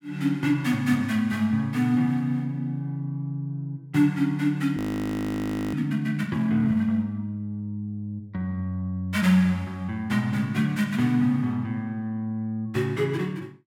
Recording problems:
audio freezing; at 5 s for 1 s

